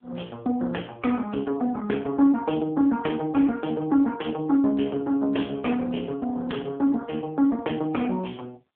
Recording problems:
phone line; 220 Hz to 3.4 kHz, AMR-NB

